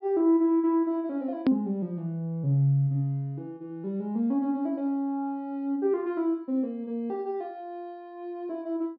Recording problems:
low-pass filter; nothing above 5.5 kHz
edit click; at 1.5 s

